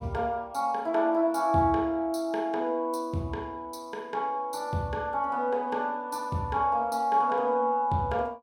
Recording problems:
none

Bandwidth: 16.5 kHz